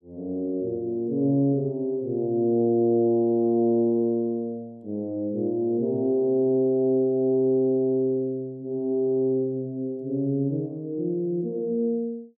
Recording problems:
none

